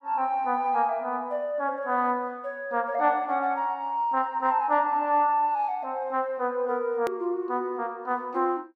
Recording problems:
hard cut with a click; at 7 s

